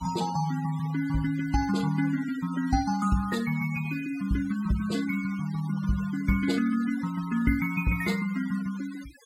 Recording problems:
noise reduction artefacts; signal-to-artefact ratio 17 dB

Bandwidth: 16 kHz